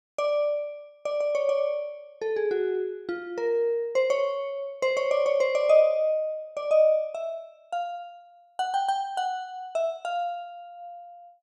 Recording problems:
none

